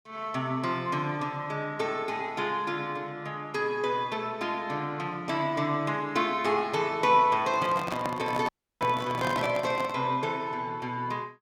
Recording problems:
handling noise; from 7.5 to 10 s; peak -1 dB vs average level
dropout; at 8.5 s

